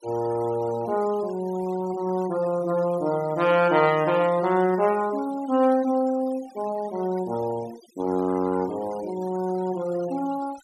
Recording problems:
denoising artefacts; signal-to-artefact ratio 20 dB

